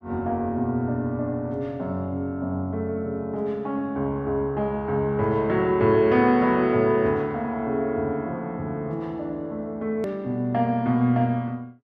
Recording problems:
hard cut with a click; at 10 s

